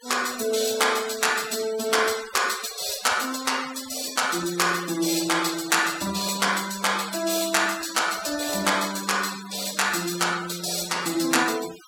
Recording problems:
noise reduction artefacts; signal-to-artefact ratio 13 dB

